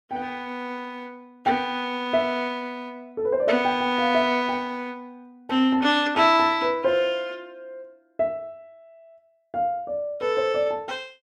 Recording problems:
none

